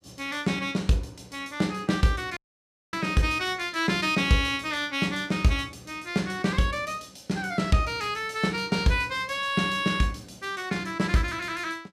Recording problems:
audio cutting out; at 2.5 s for 0.5 s

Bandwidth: 15 kHz